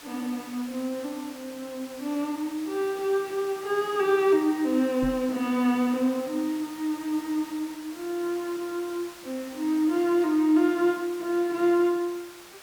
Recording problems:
hiss; SNR 18 dB
microphone thump; at 5 s; peak -3 dB vs average level

